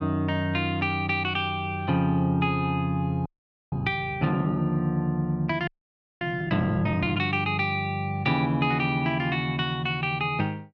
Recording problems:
frozen audio; at 3.5 s and at 5.5 s for 0.5 s

